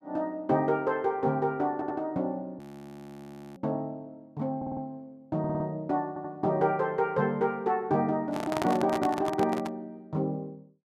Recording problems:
stutter; 4 times, first at 1.5 s
frozen audio; at 2.5 s for 1 s
handling noise; from 8.5 to 9.5 s; peak +2 dB vs average level

